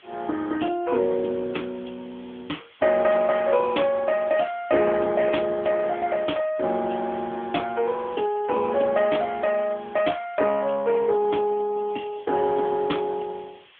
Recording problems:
phone line; 240 Hz to 3.4 kHz, AMR-NB
hiss; SNR 27 dB

